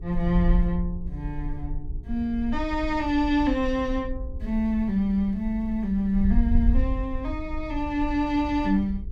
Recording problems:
mains hum; 60 Hz, harmonics up to 420 Hz, SNR 25 dB
wind noise; below 60 Hz, SNR 6 dB

